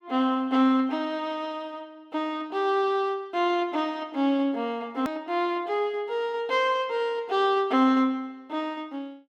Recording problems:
click at an edit; at 5 s

